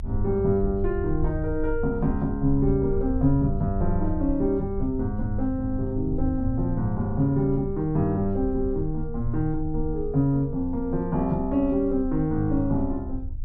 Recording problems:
rumble; below 74 Hz, strongest tone 22 Hz, SNR 9 dB

